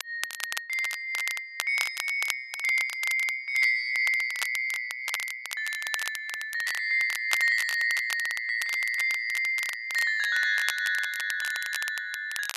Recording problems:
crackling; vinyl, SNR 10 dB

